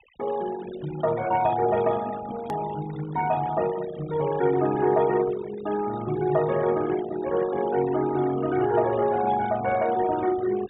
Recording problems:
treble cut off; nothing above 4 kHz
denoising artefacts; signal-to-artefact ratio 15 dB
hard cut with a click; at 2.5 s

